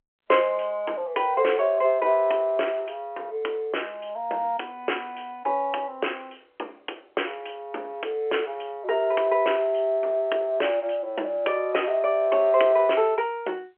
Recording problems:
phone line; 320 Hz to 3.2 kHz, G.711

